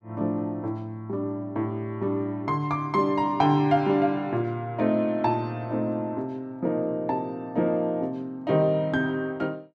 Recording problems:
none

